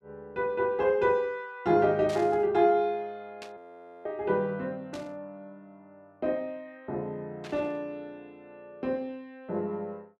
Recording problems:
burst of static; 4 times, first at 2 s; peak -10 dB vs average level
audio freezing; at 3.5 s

